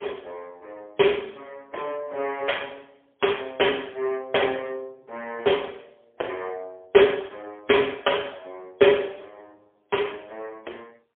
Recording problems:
phone line; 300 Hz to 3.4 kHz, AMR-NB, then MP3

